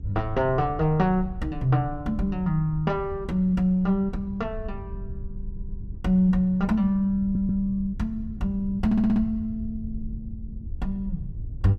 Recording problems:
rumble; below 88 Hz, SNR 13 dB
stutter; at 5.5 s, at 7 s and at 9 s

